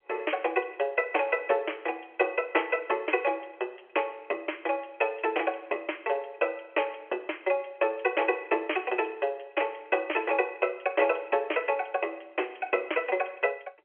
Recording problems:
telephone audio; 340 Hz to 3.3 kHz, G.711

